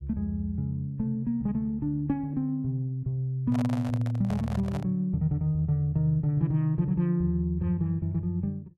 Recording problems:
handling noise; from 3.5 to 5 s; peak -7 dB vs average level

